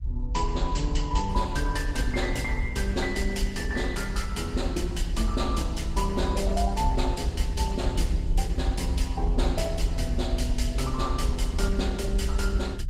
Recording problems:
lossy compression; Opus, log-spectral distance 2 dB, nothing above 18.3 kHz
low-frequency rumble; below 66 Hz, SNR 2 dB

